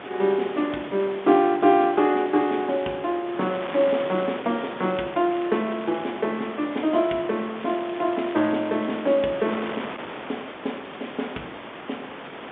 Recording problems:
telephone audio; 150 Hz to 3.6 kHz, G.711
wind noise; below 2.1 kHz, SNR 13 dB
crackling; from 3.5 to 5 s, from 5 to 6 s and from 7.5 to 9 s; loose cable, SNR 23 dB

